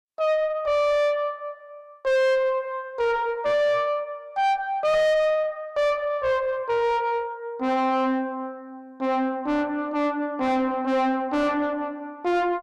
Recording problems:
distorted audio; soft clipping, signal-to-distortion ratio 5 dB

